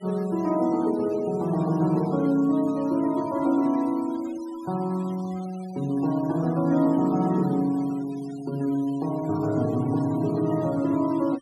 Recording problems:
noise reduction artefacts; signal-to-artefact ratio 22 dB

